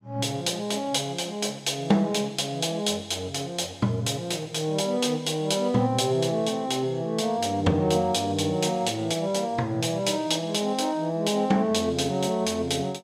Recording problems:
none

